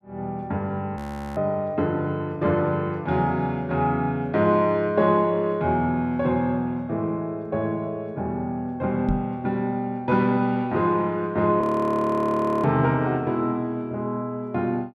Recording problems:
audio freezing; at 1 s and at 12 s for 1 s
knock on the microphone; at 9 s; peak +2 dB vs average level

